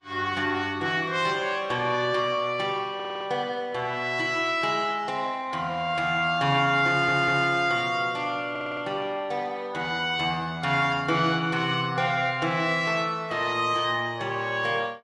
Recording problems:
lossy compression; Vorbis, log-spectral distance 2 dB, nothing above 10.1 kHz
stutter; at 3 s, at 7 s and at 8.5 s

